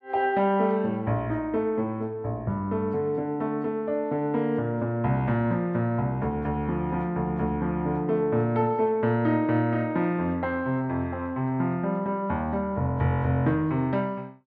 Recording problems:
none

